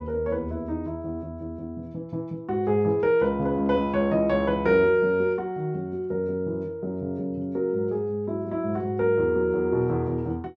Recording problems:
none

